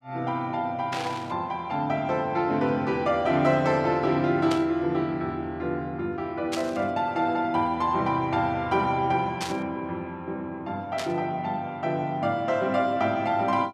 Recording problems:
static burst; 5 times, first at 1 s; peak -2 dB vs average level

